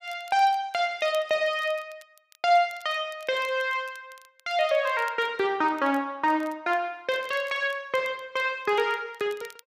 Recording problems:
crackling; vinyl, SNR 27 dB

